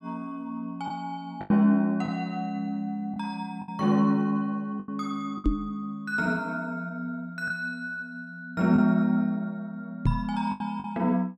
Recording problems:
packet loss; 4% of the sound replaced, filled with the last packet
microphone bump; at 5.5 s and at 10 s; peak +7 dB vs average level

